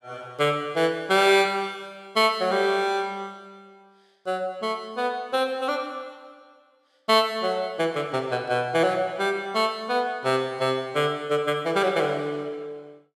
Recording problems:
none

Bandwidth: 15 kHz